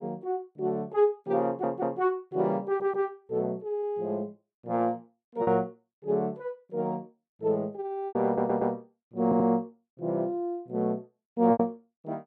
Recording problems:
packet loss; 3% of the sound replaced, filled with repeated pitch periods
stutter; 4 times, first at 1.5 s

